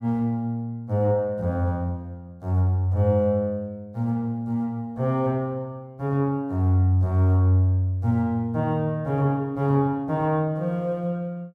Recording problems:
none

